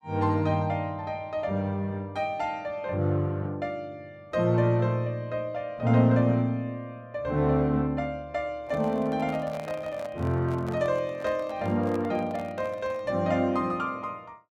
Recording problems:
handling noise; from 8.5 to 13 s; peak -9 dB vs average level

